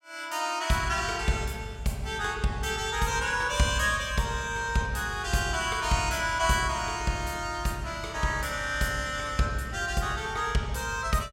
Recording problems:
none

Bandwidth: 16.5 kHz